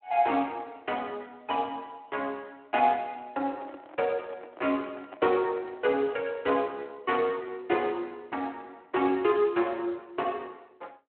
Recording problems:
telephone audio; 260 Hz to 3.2 kHz, Speex
handling noise; from 3.5 to 6.5 s; peak -10 dB vs average level

